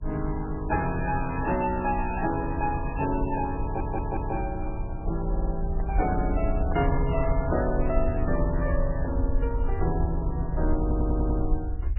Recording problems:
codec artefacts; MP3, log-spectral distance 2 dB, nothing above 2.5 kHz
low-frequency rumble; below 62 Hz, SNR 3 dB
audio stuttering; at 3.5 s, at 5.5 s and at 11 s
handling noise; from 5.5 to 8 s; peak -4 dB vs average level

